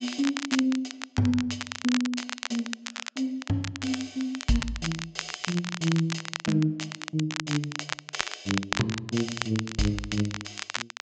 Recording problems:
low-pass filter; nothing above 8 kHz
crackle; vinyl, SNR 5 dB

